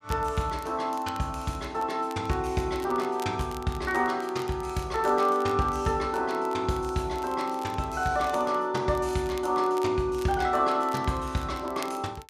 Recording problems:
crackling; vinyl, SNR 21 dB

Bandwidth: 14.5 kHz